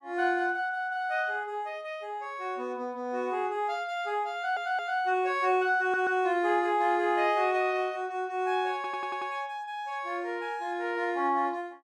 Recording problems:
stutter; at 4.5 s, at 6 s and at 9 s

